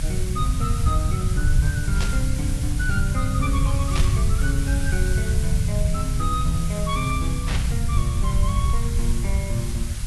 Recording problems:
lossy compression; AAC, log-spectral distance 6 dB
hiss; slope +2 dB per octave, SNR 7 dB
low-frequency rumble; below 100 Hz, SNR -6 dB
burst of static; at 2 s, at 4 s and at 7.5 s; peak +4 dB vs average level

